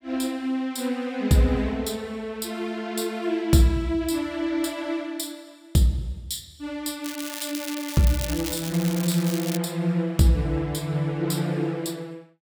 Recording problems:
crackle; from 7 to 9.5 s; loose cable, SNR 9 dB

